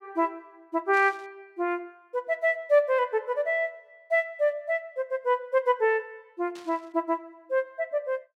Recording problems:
static burst; at 1 s and at 6.5 s; peak -14 dB vs average level

